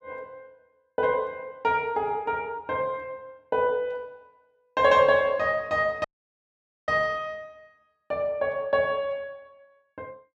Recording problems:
audio cutting out; at 6 s for 1 s

